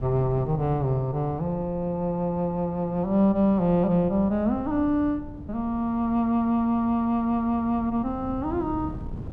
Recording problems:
wind noise; below 190 Hz, SNR 16 dB

